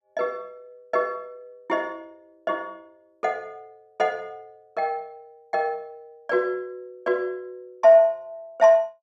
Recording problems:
none

